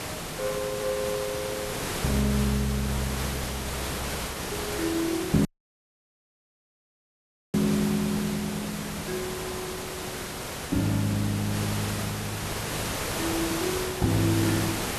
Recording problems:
hiss; slope -3 dB per octave, SNR 3 dB
dropout; at 5.5 s for 2 s

